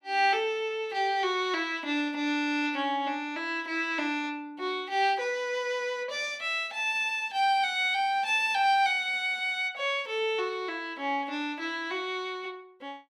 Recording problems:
none

